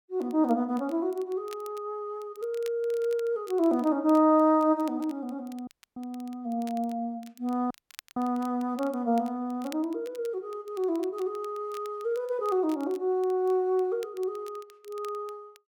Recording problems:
crackling; vinyl, SNR 25 dB
dropout; at 5.5 s and at 7.5 s

